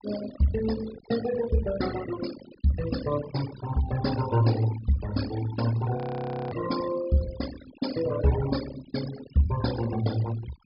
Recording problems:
treble cut off; nothing above 5.5 kHz
denoising artefacts; signal-to-artefact ratio 12 dB
audio freezing; at 6 s for 0.5 s

